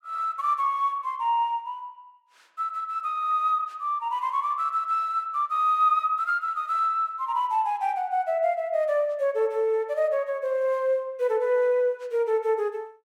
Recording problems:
none

